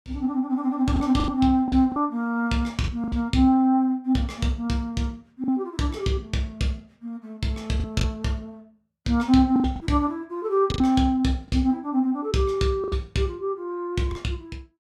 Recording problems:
packet loss; 6% of the sound replaced, filled with the last packet

